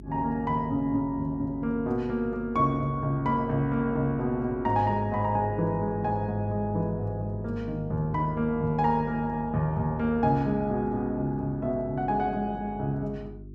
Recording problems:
hum; 50 Hz, harmonics up to 400 Hz, SNR 15 dB

